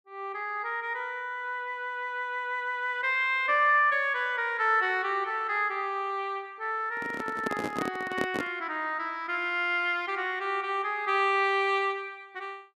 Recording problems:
handling noise; from 7 to 8.5 s; peak 0 dB vs average level

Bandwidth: 13.5 kHz